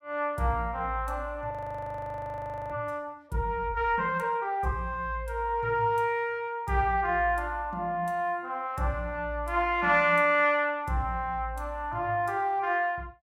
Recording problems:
audio freezing; at 1.5 s for 1 s

